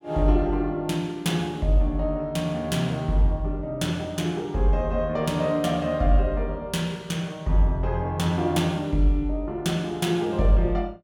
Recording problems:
none

